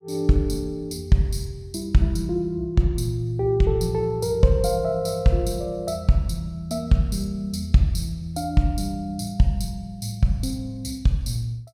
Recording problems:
none

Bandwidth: 16.5 kHz